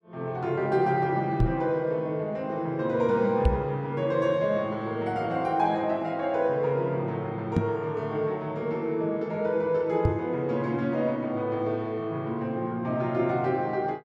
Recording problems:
microphone bump; 4 times, first at 1.5 s; peak +7 dB vs average level

